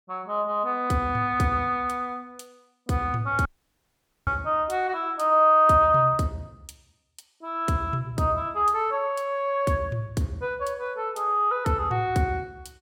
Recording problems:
dropout; at 3.5 s for 1 s

